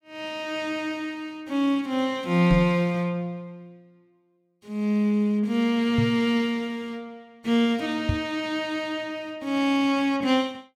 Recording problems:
knock on the microphone; at 2.5 s, at 6 s and at 8 s; peak +4 dB vs average level

